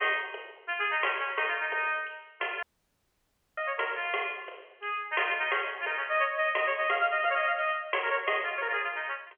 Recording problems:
phone line; 370 Hz to 3.2 kHz, G.711
dropout; at 2.5 s for 1 s

